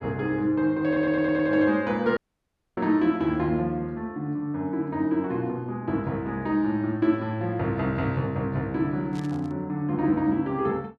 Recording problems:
stutter; at 1 s
dropout; at 2 s for 0.5 s
burst of static; at 9 s; peak -15 dB vs average level

